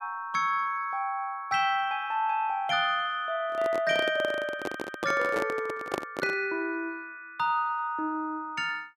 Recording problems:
microphone handling noise; from 3.5 to 6.5 s; peak +2 dB vs average level

